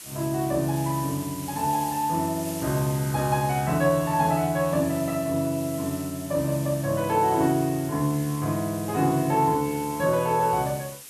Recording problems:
hiss; SNR 13 dB

